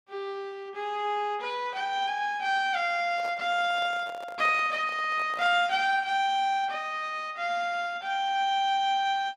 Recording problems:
microphone handling noise; from 3 to 5.5 s; peak -10 dB vs average level

